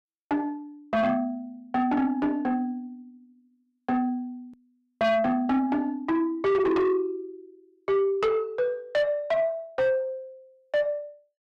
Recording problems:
distortion; soft clipping, signal-to-distortion ratio 8 dB
hard cut with a click; at 4.5 s

